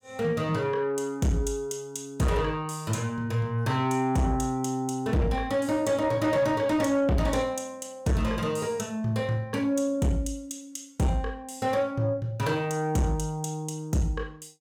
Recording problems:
distorted audio; soft clipping, signal-to-distortion ratio 11 dB

